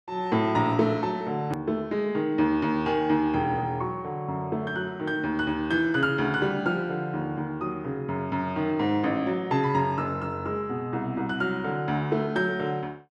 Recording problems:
hard cut with a click; at 1.5 s

